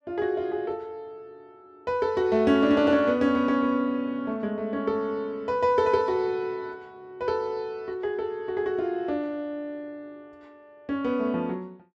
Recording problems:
none

